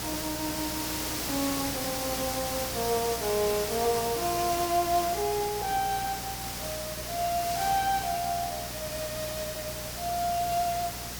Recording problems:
hum; 60 Hz, harmonics up to 420 Hz, SNR 15 dB
hiss; slope -2 dB per octave, SNR 2 dB

